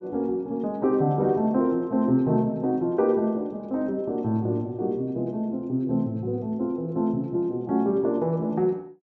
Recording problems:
treble missing; nothing above 7.9 kHz

